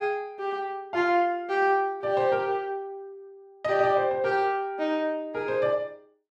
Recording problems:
none

